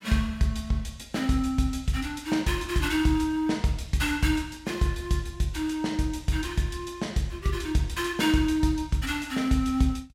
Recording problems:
none

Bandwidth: 16.5 kHz